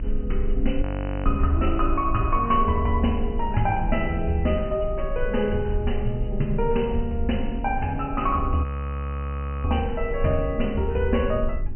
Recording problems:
treble missing; nothing above 3 kHz
hum; 50 Hz, harmonics up to 400 Hz, SNR 16 dB
hiss; SNR 45 dB
low-frequency rumble; below 50 Hz, strongest tone 22 Hz, SNR 7 dB
frozen audio; at 1 s and at 8.5 s for 1 s

